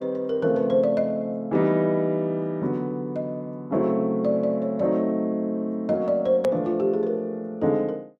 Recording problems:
edit click; at 6.5 s

